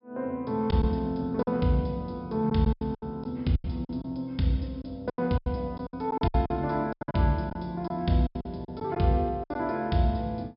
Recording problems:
treble missing; nothing above 5.5 kHz
lost packets; 12% of the sound replaced, filled with silence

